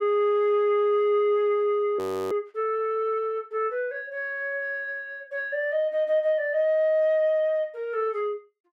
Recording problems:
frozen audio; at 2 s

